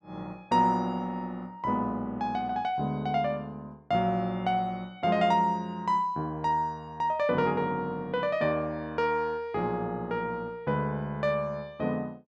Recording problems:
none

